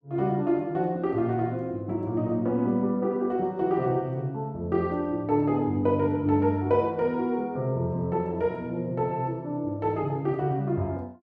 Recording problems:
none

